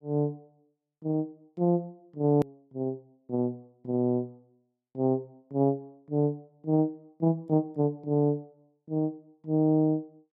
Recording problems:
edit click; at 2.5 s

